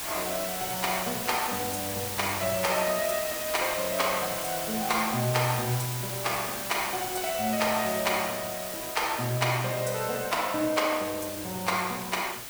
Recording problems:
background hiss; slope -1 dB per octave, SNR 4 dB

